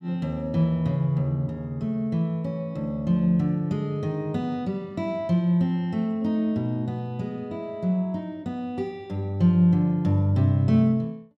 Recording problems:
none

